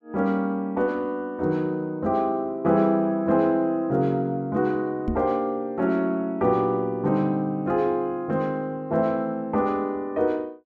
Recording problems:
microphone thump; at 5 s; peak +1 dB vs average level

